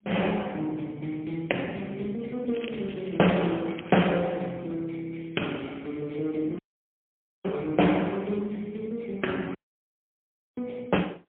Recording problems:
phone line; 220 Hz to 3.3 kHz, AMR-NB, then MP3
crackling; from 2.5 to 4 s; loose cable, SNR 16 dB
dropout; at 6.5 s for 1 s and at 9.5 s for 1 s

